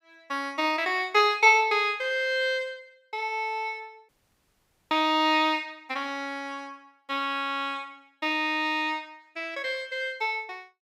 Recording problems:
audio cutting out; at 4 s for 1 s

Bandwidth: 15.5 kHz